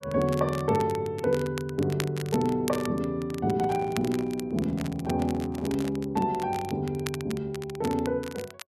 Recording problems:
crackle; vinyl, SNR 14 dB
handling noise; from 3.5 to 6 s; peak -9 dB vs average level

